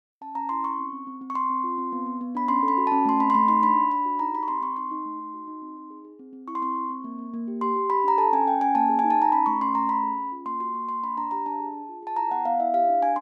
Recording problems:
none

